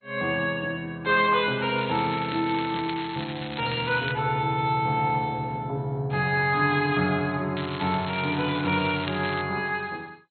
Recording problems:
codec artefacts; MP2, log-spectral distance 7 dB, nothing above 3.7 kHz
crackling; from 2 to 4 s and from 7.5 to 9.5 s; loose cable, SNR 12 dB

